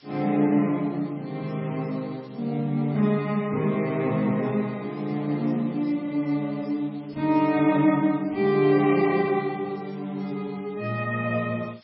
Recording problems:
lossy codec; MP3, log-spectral distance 6 dB, nothing above 4.4 kHz
hiss; slope +1 dB per octave, SNR 28 dB

